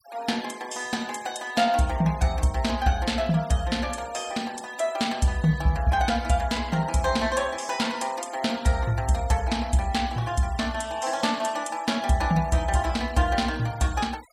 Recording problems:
denoising artefacts; signal-to-artefact ratio 20 dB

